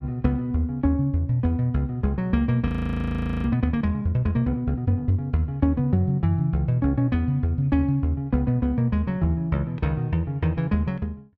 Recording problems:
audio freezing; at 2.5 s for 1 s

